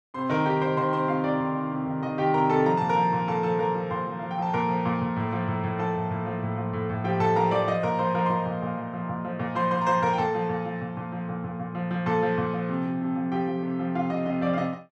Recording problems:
none

